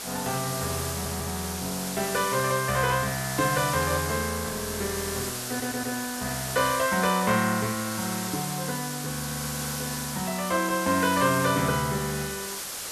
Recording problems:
hiss; slope 0 dB per octave, SNR 5 dB
audio stuttering; at 1 s, at 5.5 s and at 9 s

